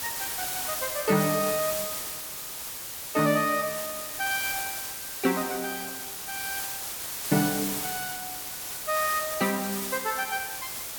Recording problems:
hiss; slope 0 dB per octave, SNR 2 dB

